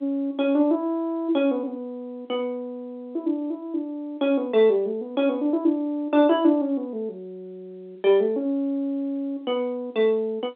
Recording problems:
telephone audio; 300 Hz to 4 kHz, G.711

